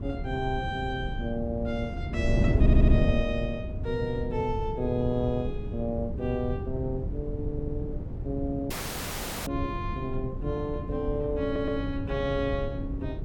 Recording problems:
wind noise; below 150 Hz, SNR 0 dB
stutter; at 2.5 s, at 7.5 s and at 11 s
audio cutting out; at 8.5 s for 1 s

